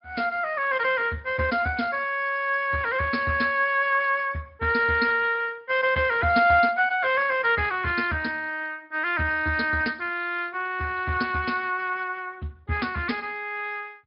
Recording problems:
treble missing; nothing above 5 kHz
codec artefacts; Speex, log-spectral distance 4 dB

